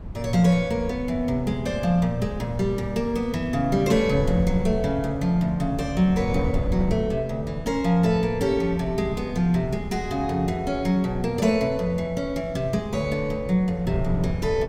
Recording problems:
wind noise; below 160 Hz, SNR 10 dB

